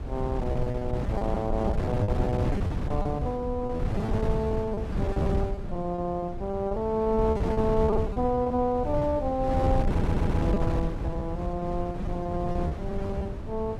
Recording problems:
wind on the microphone; below 200 Hz, SNR 1 dB
lost packets; 17% of the sound replaced, filled with repeated pitch periods
audio stuttering; at 10 s

